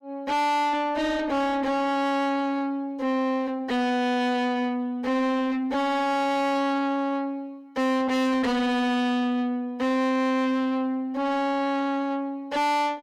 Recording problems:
distortion; soft clipping, signal-to-distortion ratio 6 dB

